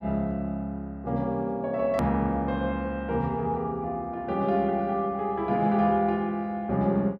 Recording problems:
click at an edit; at 2 s

